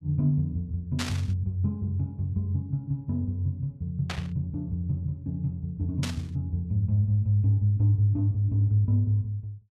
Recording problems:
static burst; at 1 s, at 4 s and at 6 s; peak -1 dB vs average level

